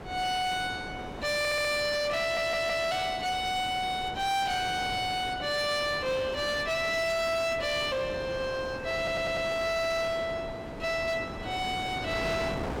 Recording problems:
distortion; hard clipping, signal-to-distortion ratio 11 dB
wind noise; below 960 Hz, SNR 11 dB
stutter; at 1.5 s, at 2 s and at 9 s

